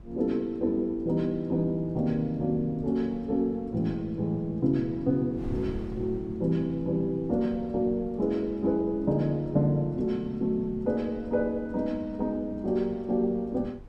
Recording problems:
wind noise; below 140 Hz, SNR 18 dB

